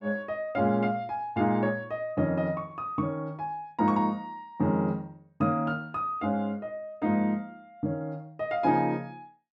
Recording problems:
none

